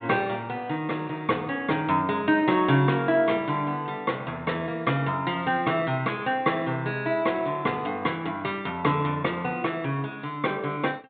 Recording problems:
low-pass filter; nothing above 4 kHz

